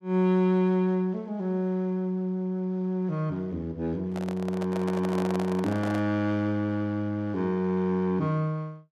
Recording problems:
microphone handling noise; from 4 to 6 s; peak -4 dB vs average level

